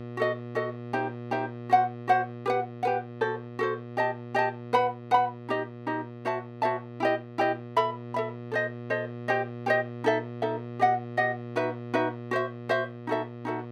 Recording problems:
hum; 60 Hz, harmonics up to 1.9 kHz, SNR 11 dB

